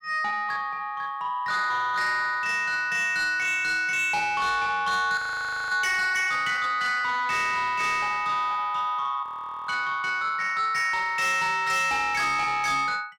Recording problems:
distortion; soft clipping, signal-to-distortion ratio 11 dB
frozen audio; at 5 s for 0.5 s and at 9 s

